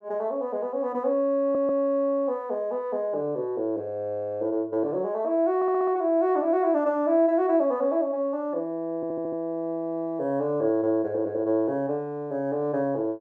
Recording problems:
stutter; at 1.5 s, at 5.5 s and at 9 s

